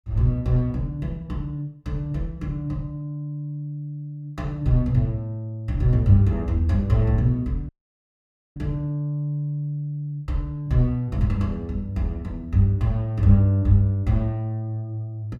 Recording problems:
dropout; at 7.5 s for 1 s

